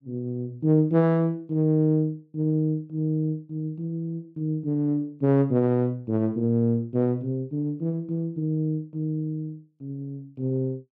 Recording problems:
none

